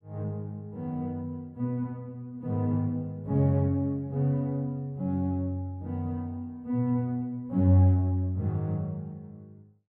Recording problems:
none

